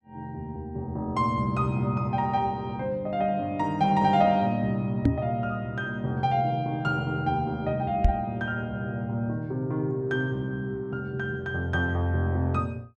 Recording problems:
microphone bump; at 5 s and at 8 s; peak +9 dB vs average level

